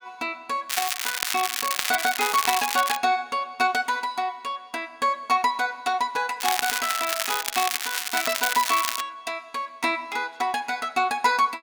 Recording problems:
crackle; from 0.5 to 3 s and from 6.5 to 9 s; loose cable, SNR 1 dB

